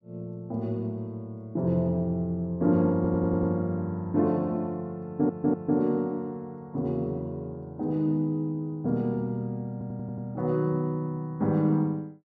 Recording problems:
audio stuttering; at 3 s, at 5 s and at 9.5 s

